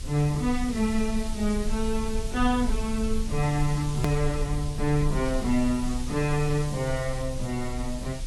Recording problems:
lossy compression; AAC, log-spectral distance 4 dB, nothing above 17.1 kHz
hum; 50 Hz, harmonics up to 600 Hz, SNR 22 dB
hiss; slope +3 dB per octave, SNR 13 dB
rumble; below 52 Hz, strongest tone 20 Hz, SNR 8 dB
hard cut with a click; at 4 s

